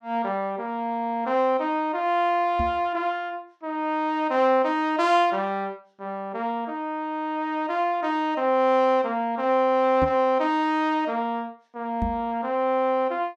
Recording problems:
microphone bump; at 2.5 s, at 10 s and at 12 s; peak -1 dB vs average level

